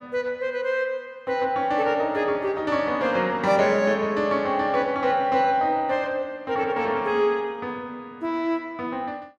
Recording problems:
none

